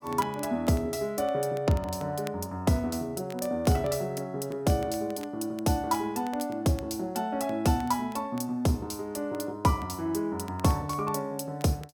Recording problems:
crackling; vinyl, SNR 23 dB

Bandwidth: 17.5 kHz